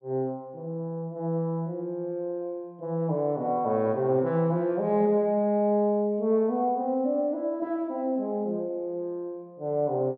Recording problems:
none

